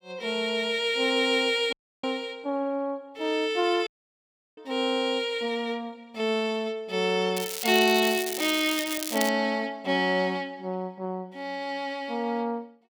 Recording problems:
dropout; at 1.5 s and at 4 s for 0.5 s
crackling; from 7.5 to 9.5 s; loose cable, SNR 6 dB

